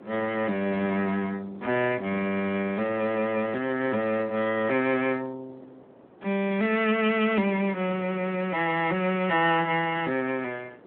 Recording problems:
phone line; 240 Hz to 3.5 kHz, Speex
wind noise; below 670 Hz, SNR 22 dB

